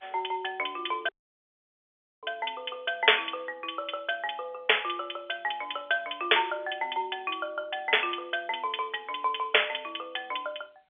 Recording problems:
phone line; 370 Hz to 3.5 kHz, G.711
dropout; at 1 s for 1 s

